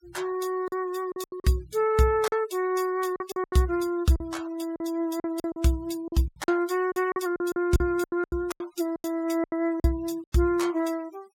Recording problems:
denoising artefacts; signal-to-artefact ratio 23 dB
packet loss; 13% of the sound replaced, filled with silence

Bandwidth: 17 kHz